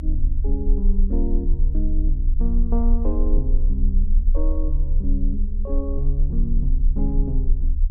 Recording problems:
rumble; below 34 Hz, strongest tone 24 Hz, SNR -7 dB

